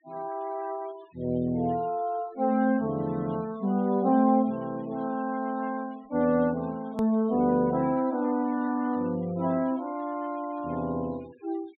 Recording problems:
low-pass filter; nothing above 4 kHz
denoising artefacts; signal-to-artefact ratio 26 dB
click at an edit; at 7 s

